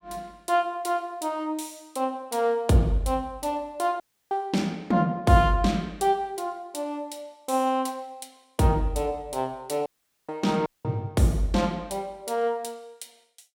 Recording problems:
audio cutting out; at 4 s, at 10 s and at 11 s

